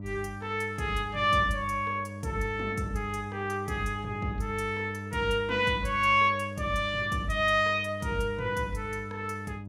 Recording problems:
mains hum; 50 Hz, harmonics up to 700 Hz, SNR 11 dB

